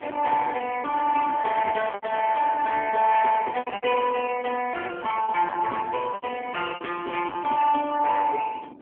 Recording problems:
telephone audio; 260 Hz to 3.2 kHz, AMR-NB
distorted audio; soft clipping, signal-to-distortion ratio 12 dB
wind on the microphone; below 1 kHz, SNR 17 dB
lost packets; 7% of the sound replaced, filled with repeated pitch periods
crackle; at 4.5 s and from 6 to 8 s; loose cable, SNR 27 dB

